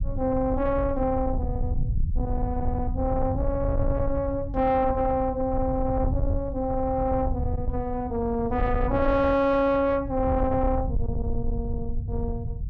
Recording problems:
distorted audio; soft clipping, signal-to-distortion ratio 11 dB
low-frequency rumble; below 94 Hz, SNR 5 dB

